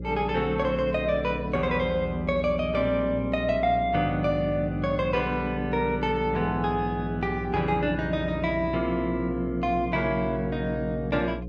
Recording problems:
hum; 60 Hz, harmonics up to 540 Hz, SNR 9 dB

